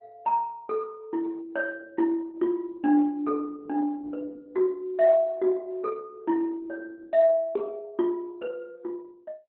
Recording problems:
lossy codec; Opus, log-spectral distance 2 dB

